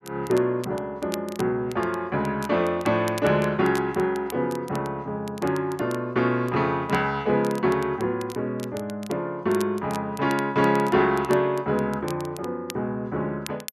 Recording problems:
crackle; vinyl, SNR 19 dB

